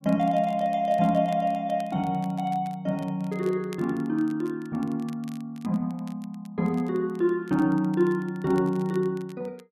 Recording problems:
crackling; vinyl, SNR 27 dB

